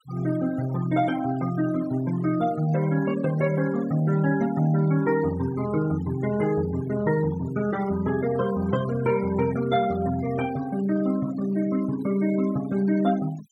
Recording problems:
denoising artefacts; signal-to-artefact ratio 17 dB

